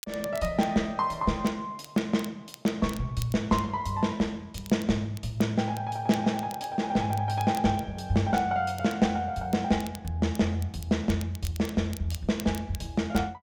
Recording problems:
crackle; vinyl, SNR 19 dB

